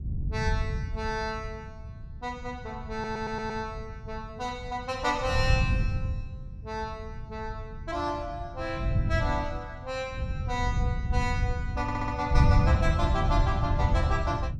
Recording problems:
wind on the microphone; below 120 Hz, SNR -3 dB
audio stuttering; at 3 s and at 12 s

